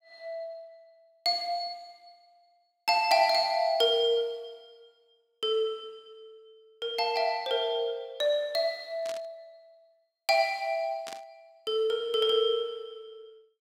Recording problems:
static burst; at 9 s and at 11 s; peak -9 dB vs average level

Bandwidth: 16 kHz